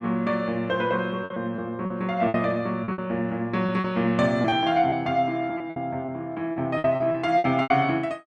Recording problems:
packet loss; 10% of the sound replaced, filled with repeated pitch periods

